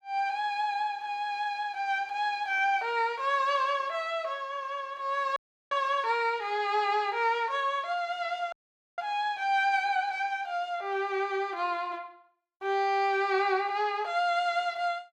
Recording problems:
dropout; at 5.5 s and at 8.5 s

